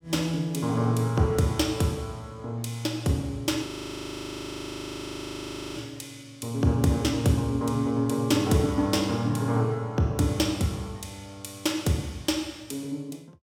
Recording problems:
frozen audio; at 3.5 s for 2 s

